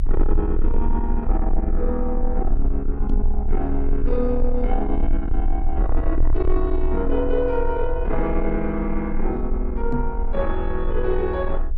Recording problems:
distortion; soft clipping, signal-to-distortion ratio 11 dB
electrical hum; 60 Hz, harmonics up to 660 Hz, SNR 23 dB
rumble; below 38 Hz, strongest tone 20 Hz, SNR 1 dB
microphone bump; at 3 s and at 10 s; peak +4 dB vs average level

